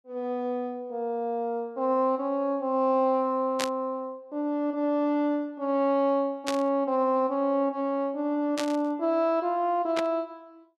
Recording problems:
static burst; 4 times, first at 3.5 s; peak +1 dB vs average level

